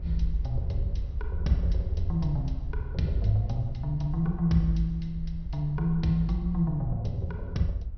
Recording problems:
treble cut off; nothing above 5.9 kHz
rumble; below 68 Hz, SNR 7 dB

